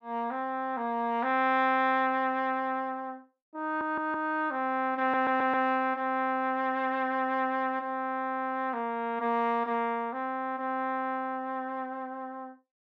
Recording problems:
audio stuttering; at 3.5 s and at 5 s

